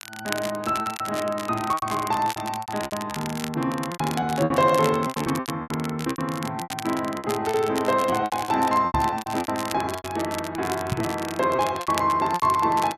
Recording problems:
crackling; vinyl, SNR 12 dB
packet loss; 15% of the sound replaced, filled with repeated pitch periods
microphone thump; at 9 s and at 11 s; peak +2 dB vs average level

